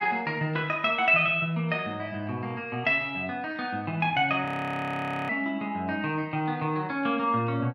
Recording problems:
frozen audio; at 4.5 s for 1 s

